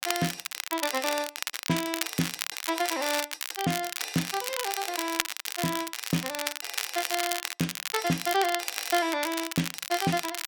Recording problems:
crackling; vinyl, SNR 2 dB

